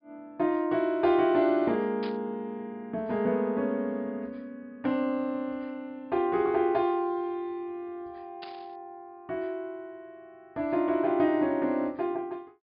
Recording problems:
treble cut off; nothing above 5.2 kHz
burst of static; at 2 s and at 8.5 s; peak -10 dB vs average level

